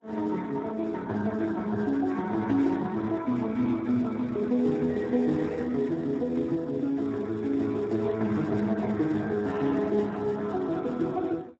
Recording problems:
codec artefacts; MP3, then Speex, log-spectral distance 3 dB, nothing above 7.8 kHz

